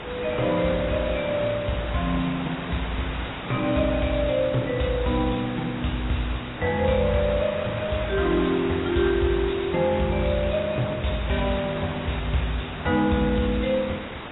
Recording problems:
lossy codec; AAC, log-spectral distance 13 dB, nothing above 3.8 kHz
distorted audio; soft clipping, signal-to-distortion ratio 9 dB
background hiss; SNR 8 dB

